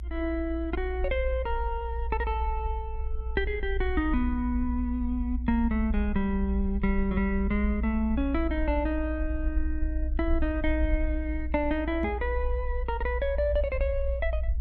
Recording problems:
low-frequency rumble; below 60 Hz, strongest tone 58 Hz, SNR 3 dB
microphone bump; at 12 s; peak 0 dB vs average level

